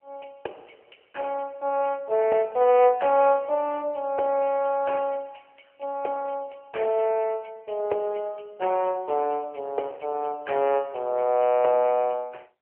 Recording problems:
phone line; 340 Hz to 3 kHz, AMR-NB

